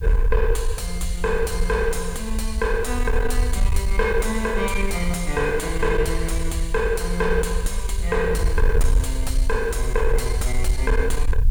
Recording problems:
distortion; soft clipping, signal-to-distortion ratio 11 dB
background hiss; slope -1 dB per octave, SNR 27 dB
rumble; below 56 Hz, SNR 1 dB

